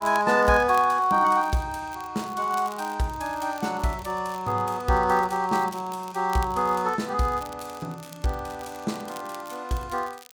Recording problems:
crackle; vinyl, SNR 22 dB

